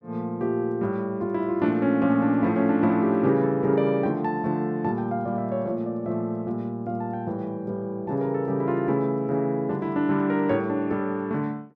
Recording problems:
none

